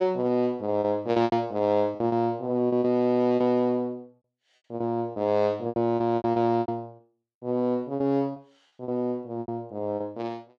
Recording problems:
packet loss; 11% of the sound replaced, filled with repeated pitch periods

